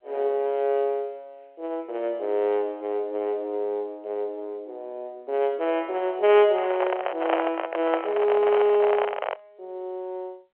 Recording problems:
telephone audio; 340 Hz to 3.3 kHz, G.711
microphone handling noise; from 6.5 to 9.5 s; peak +4 dB vs average level

